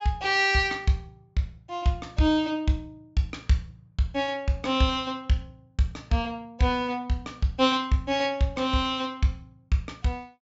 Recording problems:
low-pass filter; nothing above 7.5 kHz

